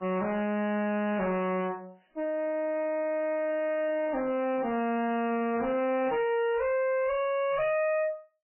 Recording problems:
lossy compression; MP3, then MP3, log-spectral distance 3 dB, nothing above 2.6 kHz
distortion; soft clipping, signal-to-distortion ratio 5 dB

